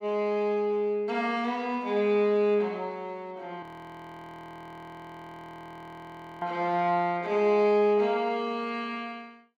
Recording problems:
frozen audio; at 3.5 s for 3 s

